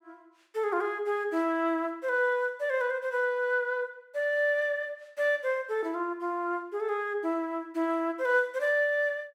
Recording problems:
none

